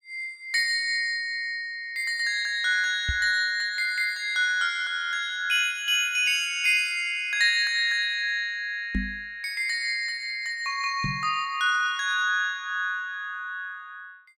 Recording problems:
knock on the microphone; at 3 s, at 9 s and at 11 s; peak 0 dB vs average level

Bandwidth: 16.5 kHz